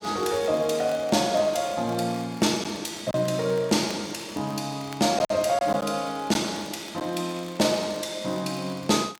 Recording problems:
crackling; vinyl, SNR 23 dB
lost packets; 1.8% of the sound replaced, filled with silence

